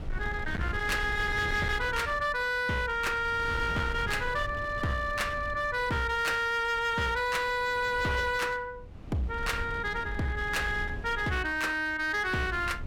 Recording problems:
distortion; hard clipping, uneven, signal-to-distortion ratio 11 dB
wind noise; below 180 Hz, SNR 11 dB

